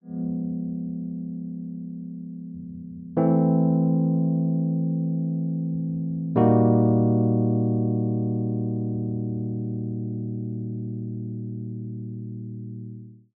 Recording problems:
none

